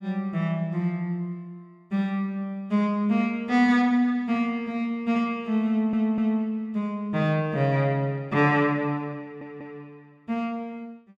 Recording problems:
audio stuttering; at 5.5 s and at 9 s

